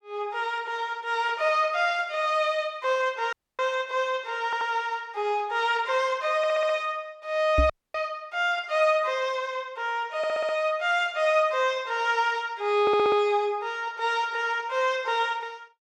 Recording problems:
audio cutting out; at 3.5 s and at 7.5 s
audio stuttering; 4 times, first at 4.5 s
microphone bump; at 7.5 s; peak +5 dB vs average level

